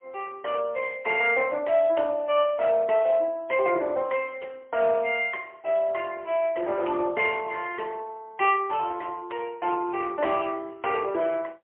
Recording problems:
telephone audio; 340 Hz to 3.1 kHz, AMR-NB, then MP3

